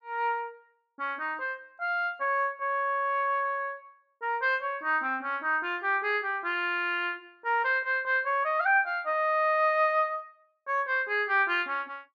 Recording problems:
none

